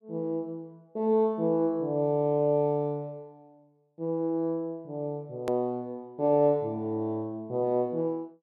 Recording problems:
hard cut with a click; at 5.5 s

